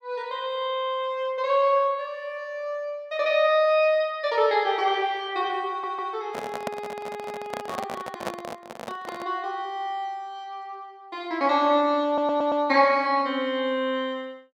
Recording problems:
audio stuttering; at 5.5 s, at 7 s and at 12 s
handling noise; from 6.5 to 9.5 s; peak -1 dB vs average level

